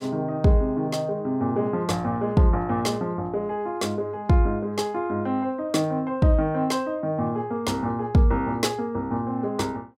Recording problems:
none

